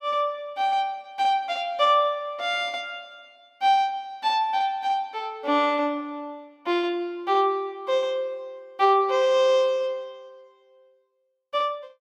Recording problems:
none

